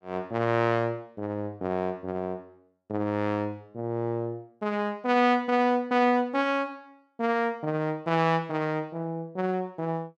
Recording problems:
none

